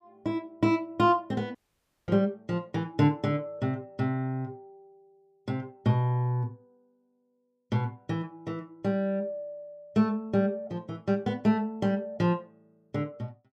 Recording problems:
dropout; at 1.5 s for 0.5 s

